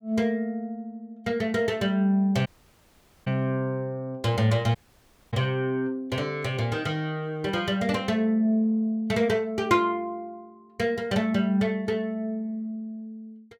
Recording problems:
dropout; at 2.5 s for 1 s and at 5 s for 0.5 s

